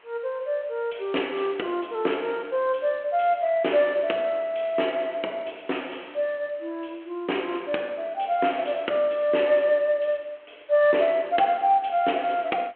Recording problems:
telephone audio; 280 Hz to 3.2 kHz, G.726
background hiss; SNR 29 dB

